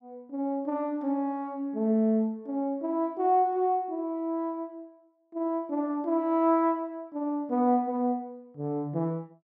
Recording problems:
none

